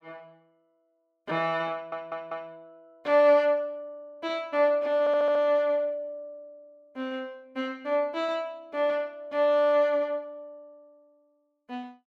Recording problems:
stutter; at 1.5 s and at 5 s

